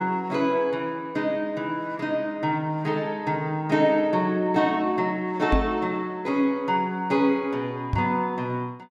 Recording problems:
microphone bump; at 5.5 s and at 8 s; peak +4 dB vs average level

